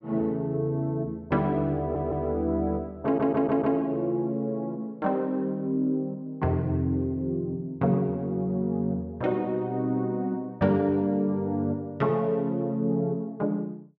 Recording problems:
audio stuttering; at 2 s and at 3 s

